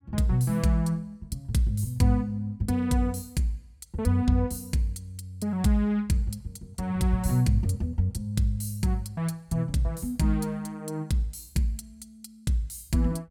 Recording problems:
none

